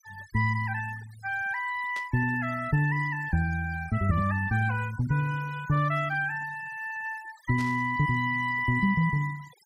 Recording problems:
denoising artefacts; signal-to-artefact ratio 20 dB
burst of static; at 2 s and at 7.5 s; peak -10 dB vs average level

